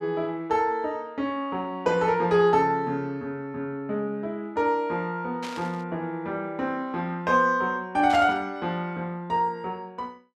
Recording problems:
burst of static; at 5.5 s and at 8 s; peak -8 dB vs average level

